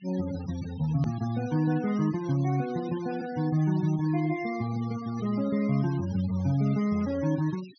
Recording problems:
treble cut off; nothing above 6.3 kHz
denoising artefacts; signal-to-artefact ratio 19 dB
click at an edit; at 1 s

